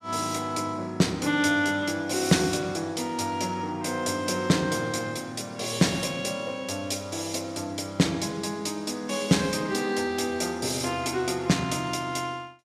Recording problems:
none

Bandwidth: 14.5 kHz